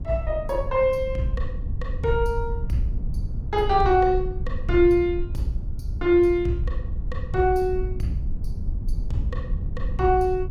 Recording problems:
low-frequency rumble; below 78 Hz, SNR 8 dB

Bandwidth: 17 kHz